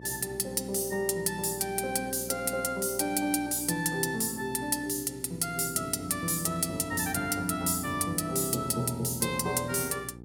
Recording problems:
hum; 60 Hz, harmonics up to 900 Hz, SNR 19 dB

